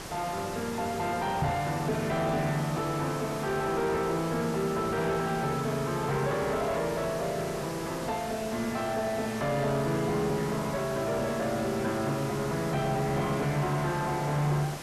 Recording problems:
distortion; soft clipping, signal-to-distortion ratio 4 dB
hiss; SNR 3 dB
microphone thump; at 1.5 s; peak +6 dB vs average level

